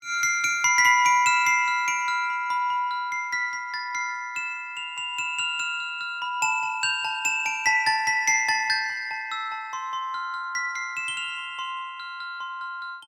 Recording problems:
none

